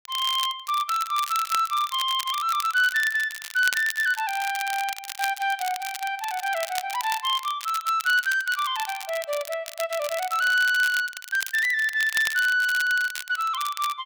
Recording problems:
crackling; vinyl, SNR 11 dB

